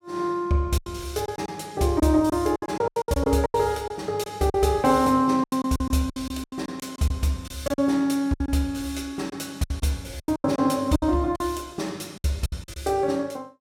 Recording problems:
packet loss; 13% of the sound replaced, filled with silence

